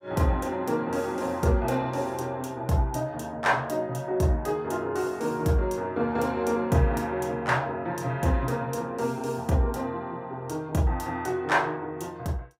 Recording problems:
none

